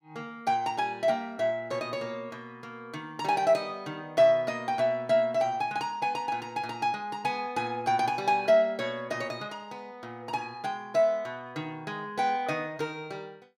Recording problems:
none

